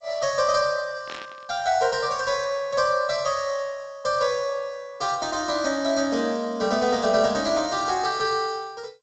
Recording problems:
lossy compression; G.722, then MP2, log-spectral distance 4 dB, nothing above 7.3 kHz
static burst; at 1 s; peak -9 dB vs average level

